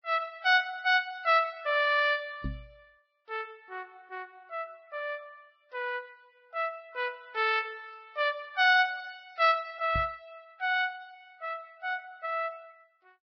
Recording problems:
lossy compression; Vorbis, log-spectral distance 2 dB, nothing above 5.2 kHz
microphone bump; at 2.5 s and at 10 s; peak -3 dB vs average level

